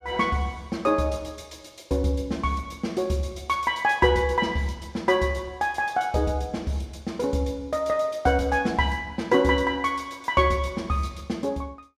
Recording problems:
none

